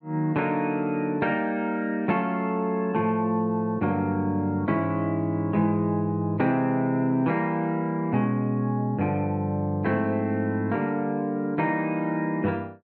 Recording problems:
none

